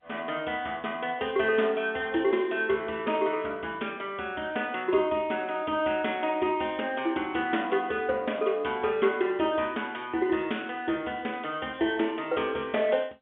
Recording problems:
phone line; 190 Hz to 3.5 kHz, G.711

